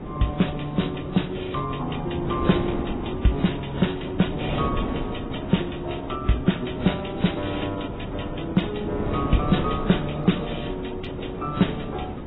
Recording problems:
lossy codec; AAC, then AAC, log-spectral distance 8 dB, nothing above 3.9 kHz
wind noise; below 430 Hz, SNR 6 dB

